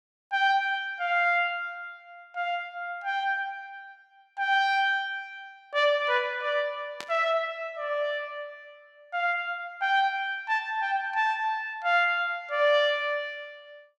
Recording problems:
burst of static; at 7 s; peak -6 dB vs average level

